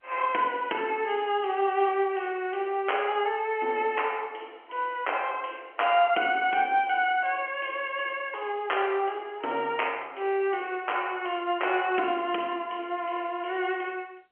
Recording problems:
phone line; 260 Hz to 3.2 kHz, G.711

